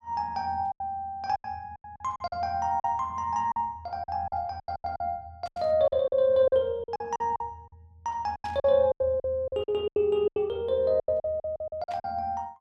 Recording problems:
packet loss; 16% of the sound replaced, filled with silence
burst of static; at 5.5 s, at 8.5 s and at 12 s; peak -14 dB vs average level

